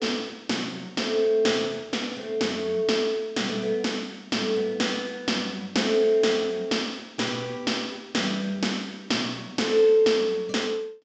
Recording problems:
low-pass filter; nothing above 8 kHz

